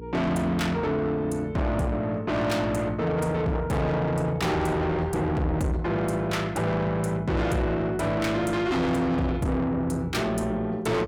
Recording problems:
distortion; soft clipping, signal-to-distortion ratio 7 dB
hum; 60 Hz, harmonics up to 480 Hz, SNR 15 dB

